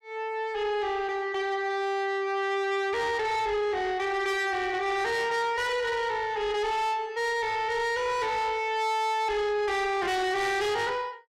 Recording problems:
distorted audio; soft clipping, signal-to-distortion ratio 8 dB

